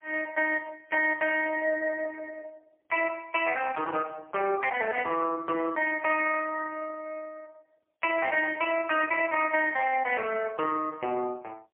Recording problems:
phone line; 320 Hz to 3.1 kHz, AMR-NB, then MP3

